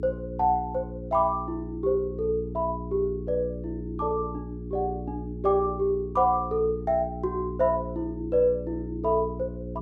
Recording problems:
hum; 60 Hz, harmonics up to 420 Hz, SNR 9 dB

